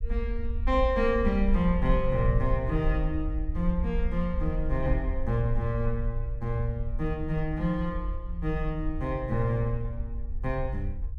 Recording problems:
rumble; below 58 Hz, SNR 3 dB

